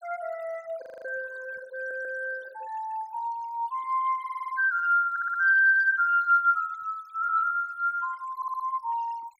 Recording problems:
noise reduction artefacts; signal-to-artefact ratio 27 dB
audio freezing; at 1 s
stutter; 4 times, first at 2 s

